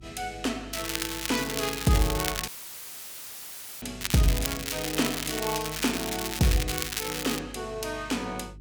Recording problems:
mains hum; 50 Hz, harmonics up to 400 Hz, SNR 18 dB
crackling; from 0.5 to 2.5 s and from 4 to 7.5 s; loose cable, SNR 3 dB
audio cutting out; at 2.5 s for 1.5 s; filled with static

